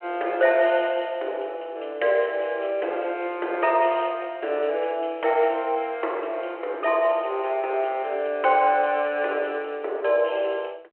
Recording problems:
telephone audio; 300 Hz to 3.2 kHz, G.726

